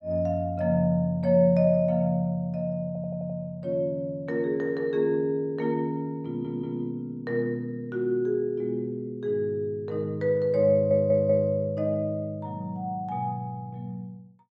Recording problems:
stutter; at 3 s, at 6.5 s and at 11 s

